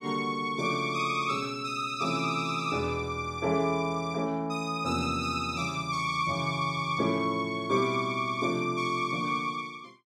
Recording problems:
none

